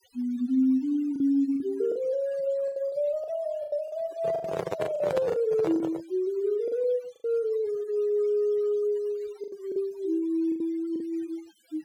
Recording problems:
denoising artefacts; signal-to-artefact ratio 23 dB
lost packets; 8% of the sound replaced, filled with the last packet
microphone handling noise; from 4 to 6 s; peak +1 dB vs average level

